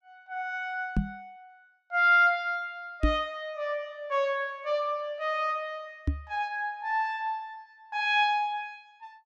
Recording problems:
microphone thump; at 1 s, at 3 s and at 6 s; peak +6 dB vs average level

